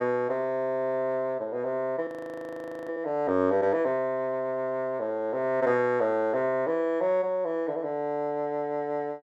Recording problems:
audio freezing; at 2 s for 1 s

